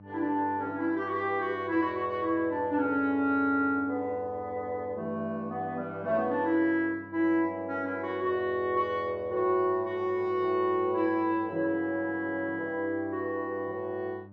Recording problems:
mains hum; 50 Hz, harmonics up to 1.2 kHz, SNR 21 dB

